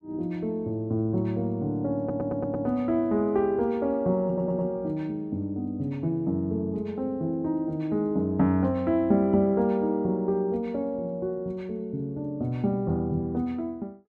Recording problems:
audio stuttering; at 2 s and at 4.5 s

